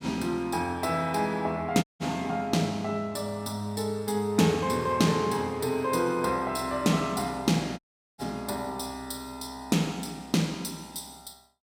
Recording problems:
audio cutting out; at 2 s and at 8 s

